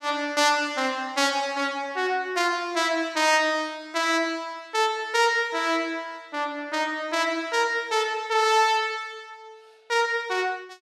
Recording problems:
none

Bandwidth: 14.5 kHz